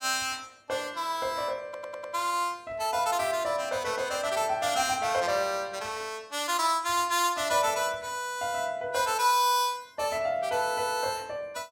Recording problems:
stutter; at 1.5 s

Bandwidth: 17.5 kHz